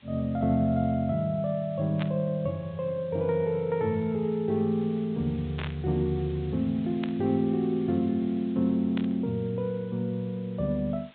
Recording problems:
low-pass filter; nothing above 4 kHz
background hiss; SNR 27 dB
burst of static; 4 times, first at 2 s; peak -5 dB vs average level

